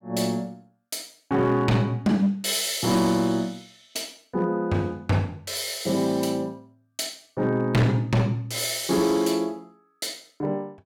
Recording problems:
distortion; hard clipping, signal-to-distortion ratio 10 dB

